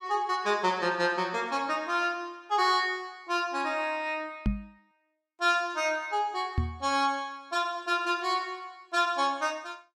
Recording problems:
microphone bump; at 4.5 s and at 6.5 s; peak +4 dB vs average level

